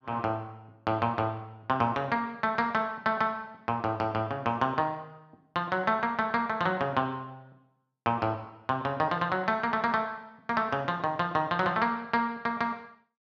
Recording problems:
none

